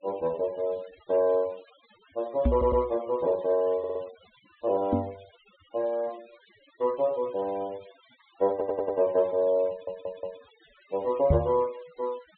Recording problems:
treble cut off; nothing above 4 kHz
noise reduction artefacts; signal-to-artefact ratio 25 dB
microphone bump; at 2.5 s, at 5 s and at 11 s; peak +7 dB vs average level
stutter; 4 times, first at 2.5 s

